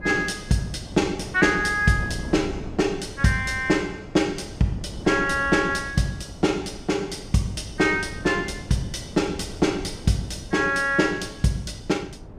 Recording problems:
wind on the microphone; below 290 Hz, SNR 14 dB

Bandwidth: 15 kHz